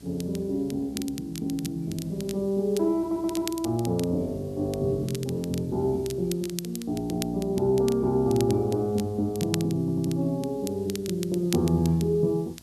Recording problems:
hum; 60 Hz, harmonics up to 1 kHz, SNR 24 dB
background hiss; SNR 28 dB
crackle; vinyl, SNR 14 dB
audio stuttering; at 3 s and at 10 s

